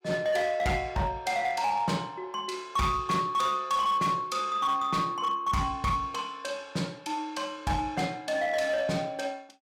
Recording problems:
distortion; hard clipping, uneven, signal-to-distortion ratio 11 dB

